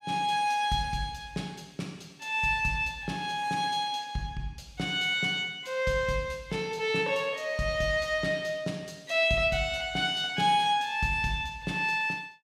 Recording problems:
none

